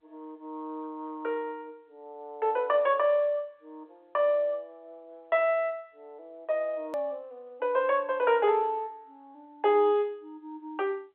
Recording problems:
telephone audio; 340 Hz to 3.6 kHz, G.711
hard cut with a click; at 7 s

